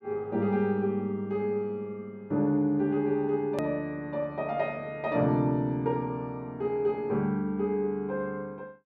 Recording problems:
hard cut with a click; at 3.5 s

